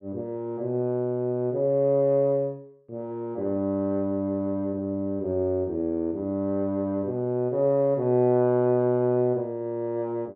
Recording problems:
none

